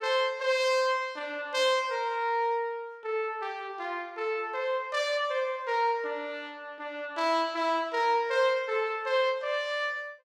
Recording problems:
none

